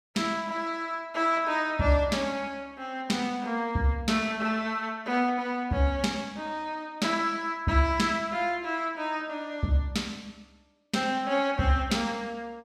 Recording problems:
none

